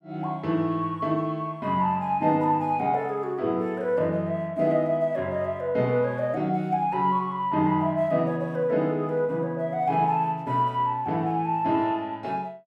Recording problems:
none

